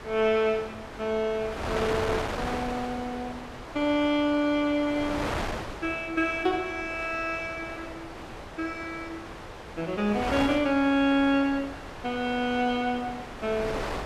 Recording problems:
wind on the microphone; below 1.6 kHz, SNR 9 dB

